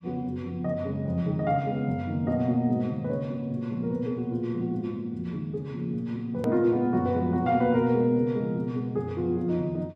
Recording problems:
edit click; at 6.5 s

